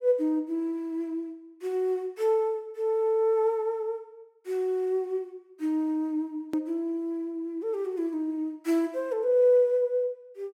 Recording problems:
edit click; at 6.5 s

